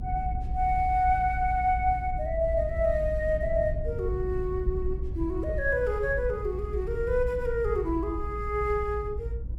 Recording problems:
low-frequency rumble; below 74 Hz, SNR 6 dB

